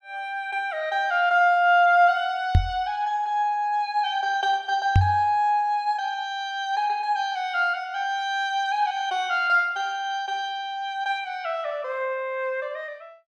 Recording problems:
microphone bump; at 2.5 s and at 5 s; peak +8 dB vs average level

